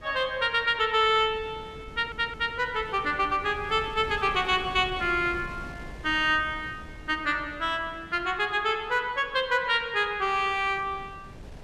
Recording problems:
wind on the microphone; below 380 Hz, SNR 19 dB
audio stuttering; at 2 s

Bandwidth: 13 kHz